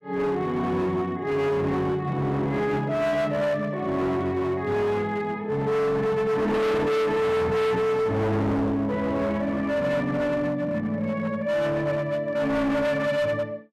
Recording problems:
distorted audio; hard clipping, signal-to-distortion ratio 6 dB

